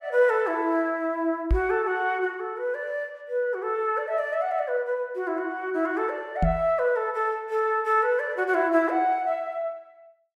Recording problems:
knock on the microphone; at 1.5 s and at 6.5 s; peak +5 dB vs average level

